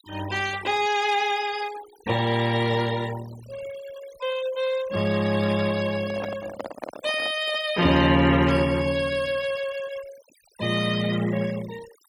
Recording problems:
noise reduction artefacts; signal-to-artefact ratio 16 dB
handling noise; from 6 to 7.5 s; peak -5 dB vs average level

